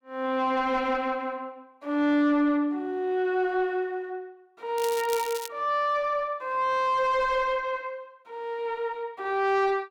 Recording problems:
distorted audio; soft clipping, signal-to-distortion ratio 10 dB
crackle; at 5 s; loose cable, SNR 12 dB

